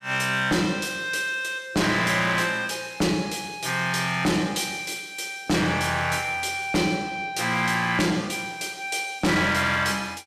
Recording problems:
distorted audio; hard clipping, uneven, signal-to-distortion ratio 7 dB

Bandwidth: 14.5 kHz